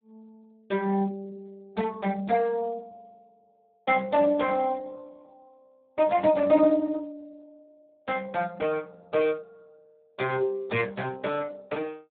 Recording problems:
telephone audio; 150 Hz to 3.6 kHz, Speex

